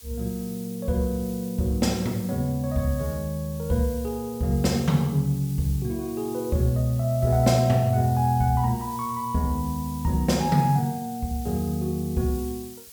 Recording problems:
hiss; slope +2 dB per octave, SNR 17 dB

